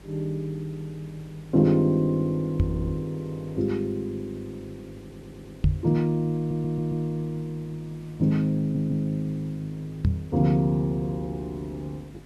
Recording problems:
hum; 50 Hz, harmonics up to 350 Hz, SNR 23 dB
background hiss; slope -4 dB per octave, SNR 26 dB
microphone bump; at 2.5 s, at 5.5 s and at 10 s; peak +8 dB vs average level
stutter; 4 times, first at 2.5 s

